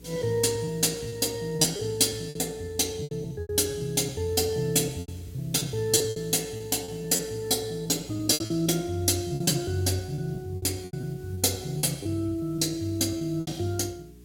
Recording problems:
hum; 60 Hz, harmonics up to 420 Hz, SNR 23 dB
hiss; SNR 29 dB
lost packets; 10% of the sound replaced, filled with repeated pitch periods

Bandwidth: 16.5 kHz